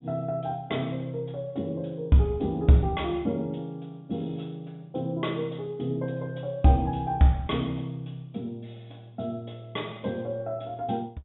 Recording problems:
treble missing; nothing above 3.7 kHz

